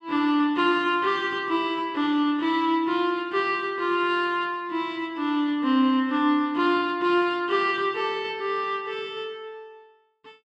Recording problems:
none

